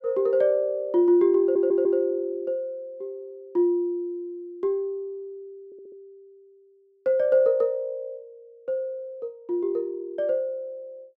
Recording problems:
stutter; at 1.5 s and at 5.5 s

